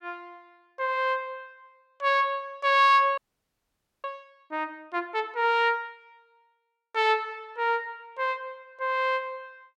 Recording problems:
frozen audio; at 3 s for 1 s

